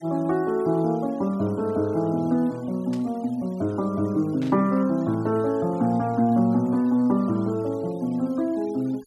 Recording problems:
denoising artefacts; signal-to-artefact ratio 27 dB
static burst; at 3 s and at 4.5 s; peak -15 dB vs average level

